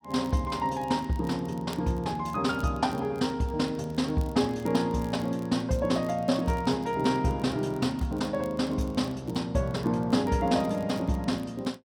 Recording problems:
crackle; vinyl, SNR 27 dB

